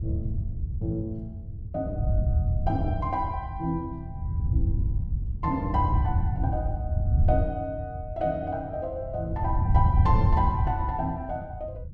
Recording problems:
wind noise; below 110 Hz, SNR -3 dB

